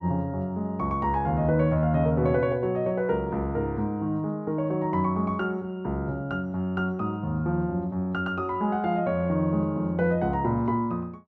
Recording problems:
none

